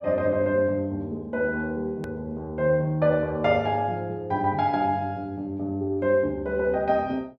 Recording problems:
click at an edit; at 2 s

